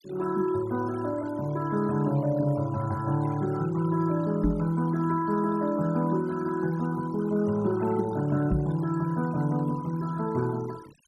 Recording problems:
noise reduction artefacts; signal-to-artefact ratio 18 dB
knock on the microphone; at 4.5 s and at 8.5 s; peak +6 dB vs average level

